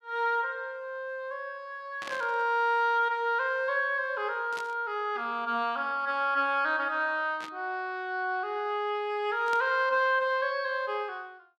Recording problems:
burst of static; 4 times, first at 2 s; peak -7 dB vs average level

